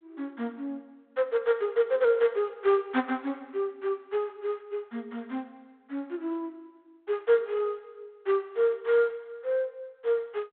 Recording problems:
phone line; 300 Hz to 3.5 kHz, G.726

